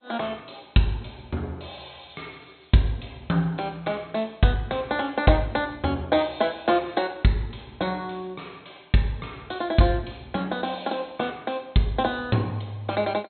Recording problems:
low-pass filter; nothing above 4.2 kHz
lossy compression; G.722, log-spectral distance 6 dB

